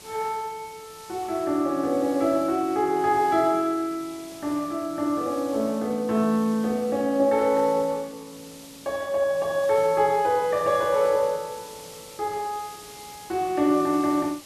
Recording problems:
hiss; SNR 20 dB

